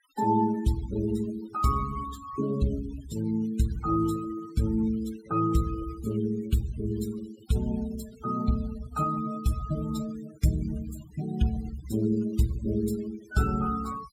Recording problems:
noise reduction artefacts; signal-to-artefact ratio 17 dB

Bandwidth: 16.5 kHz